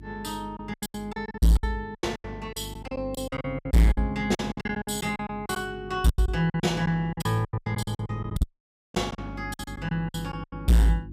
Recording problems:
distortion; hard clipping, signal-to-distortion ratio 6 dB
hum; 50 Hz, harmonics up to 350 Hz, SNR 14 dB
lost packets; 20% of the sound replaced, filled with silence
audio cutting out; at 8.5 s for 0.5 s

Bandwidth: 15.5 kHz